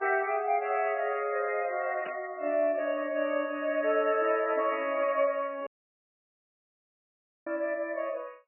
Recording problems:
lossy compression; MP3, log-spectral distance 2 dB, nothing above 2.7 kHz
static burst; at 2 s; peak -9 dB vs average level
dropout; at 5.5 s for 2 s

